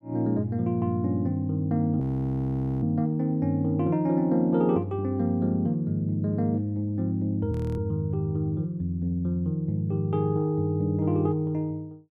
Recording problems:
audio freezing; at 2 s for 1 s and at 7.5 s

